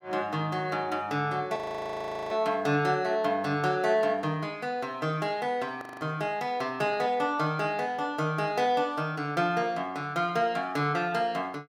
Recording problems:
frozen audio; at 1.5 s for 1 s and at 6 s

